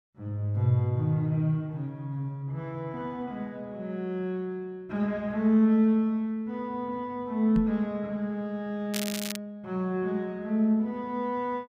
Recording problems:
knock on the microphone; at 7.5 s; peak +3 dB vs average level
crackling; at 9 s; loose cable, SNR 7 dB

